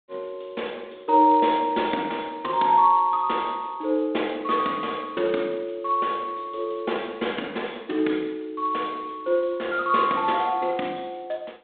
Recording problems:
telephone audio; 220 Hz to 3.7 kHz, G.726

